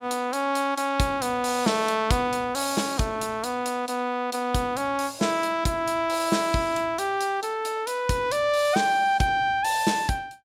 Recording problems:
none

